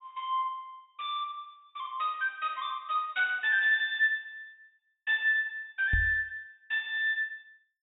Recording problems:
treble cut off; nothing above 4 kHz
knock on the microphone; at 6 s; peak +2 dB vs average level

